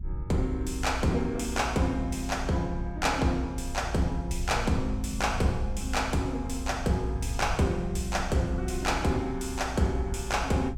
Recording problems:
rumble; below 76 Hz, SNR 7 dB

